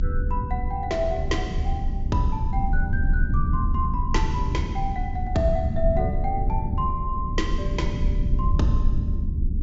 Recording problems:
treble missing; nothing above 7.5 kHz
electrical hum; 50 Hz, harmonics up to 400 Hz, SNR 20 dB
rumble; below 86 Hz, SNR -2 dB

